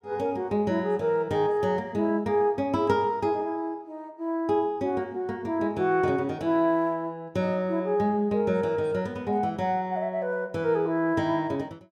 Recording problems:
none

